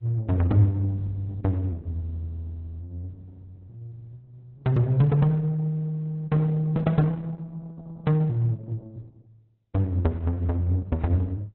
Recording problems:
lossy codec; Opus, then AAC, log-spectral distance 2 dB

